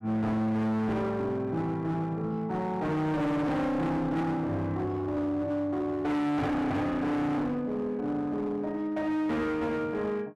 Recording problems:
distortion; hard clipping, uneven, signal-to-distortion ratio 7 dB

